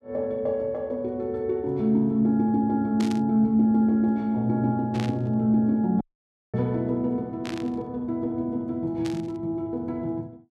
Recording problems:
burst of static; 4 times, first at 3 s; peak -8 dB vs average level
dropout; at 6 s for 0.5 s

